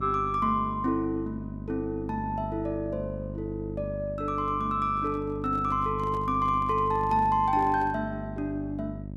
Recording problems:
electrical hum; 50 Hz, harmonics up to 650 Hz, SNR 9 dB
microphone handling noise; from 5 to 8 s; peak -11 dB vs average level

